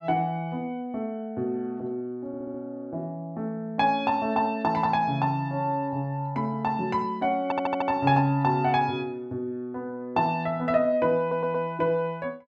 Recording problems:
stutter; at 2.5 s, at 7.5 s and at 11 s

